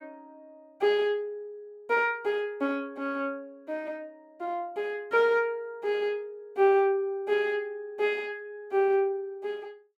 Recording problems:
none

